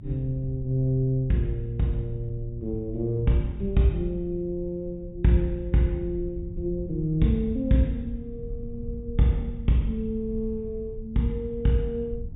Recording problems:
low-pass filter; nothing above 4 kHz
low-frequency rumble; below 80 Hz, strongest tone 34 Hz, SNR 15 dB
wind on the microphone; below 96 Hz, SNR 15 dB

